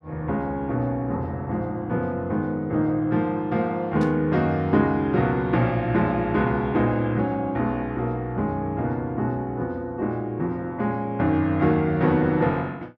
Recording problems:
static burst; at 4 s; peak -14 dB vs average level

